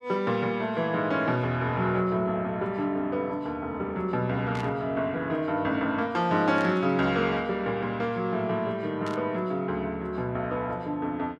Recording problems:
burst of static; at 4.5 s, at 6.5 s and at 9 s; peak -10 dB vs average level

